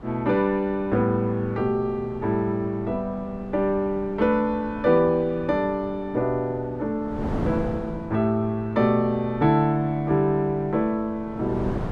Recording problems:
wind on the microphone; below 470 Hz, SNR 14 dB

